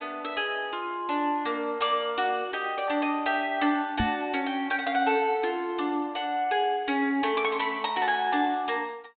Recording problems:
treble missing; nothing above 4 kHz
microphone bump; at 4 s; peak +2 dB vs average level

